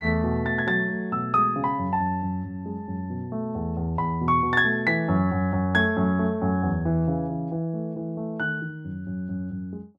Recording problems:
none

